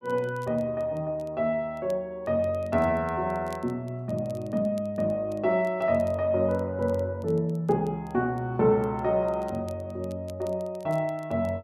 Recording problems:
crackling; vinyl, SNR 30 dB

